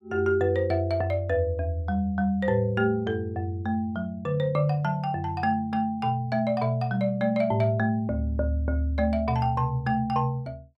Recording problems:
none

